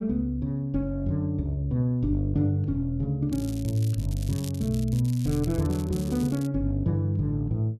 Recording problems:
crackling; from 3.5 to 6.5 s; loose cable, SNR 18 dB

